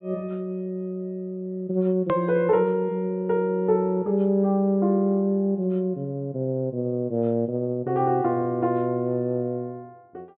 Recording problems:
low-pass filter; nothing above 4 kHz
click at an edit; at 2 s

